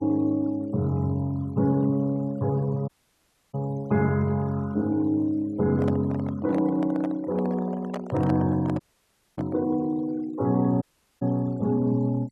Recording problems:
denoising artefacts; signal-to-artefact ratio 26 dB
dropout; at 3 s for 0.5 s, at 9 s for 0.5 s and at 11 s
microphone handling noise; from 5.5 to 9.5 s; peak -4 dB vs average level

